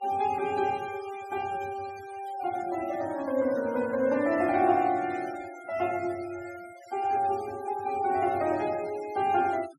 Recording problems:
denoising artefacts; signal-to-artefact ratio 20 dB

